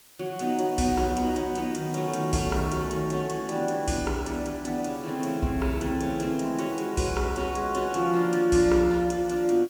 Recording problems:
background hiss; slope 0 dB per octave, SNR 23 dB

